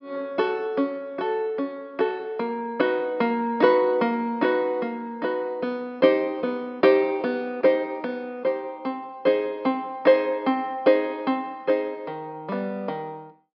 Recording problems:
treble cut off; nothing above 5.5 kHz

